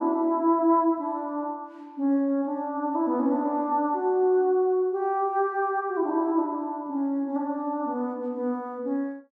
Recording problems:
none

